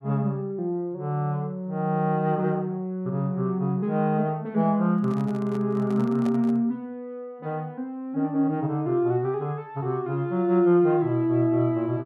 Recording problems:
microphone handling noise; from 5 to 6.5 s; peak -9 dB vs average level

